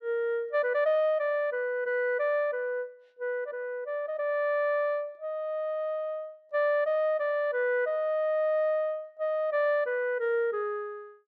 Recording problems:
none

